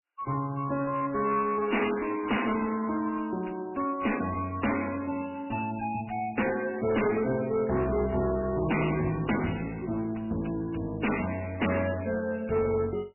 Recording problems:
lossy codec; MP3, log-spectral distance 9 dB, nothing above 2.8 kHz
distortion; hard clipping, uneven, signal-to-distortion ratio 9 dB

